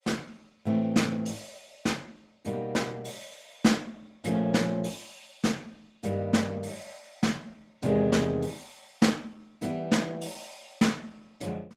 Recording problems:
codec artefacts; Opus, log-spectral distance 5 dB, nothing above 18.9 kHz

